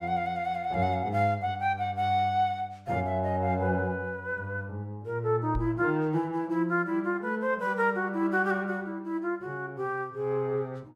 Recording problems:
knock on the microphone; at 5.5 s; peak -2 dB vs average level

